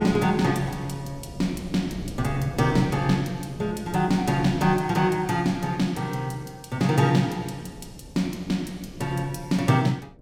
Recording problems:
wind on the microphone; below 260 Hz, SNR 17 dB

